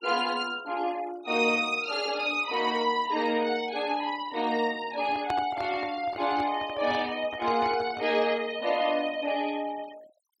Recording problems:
noise reduction artefacts; signal-to-artefact ratio 19 dB
microphone handling noise; from 5 to 8 s; peak -2 dB vs average level

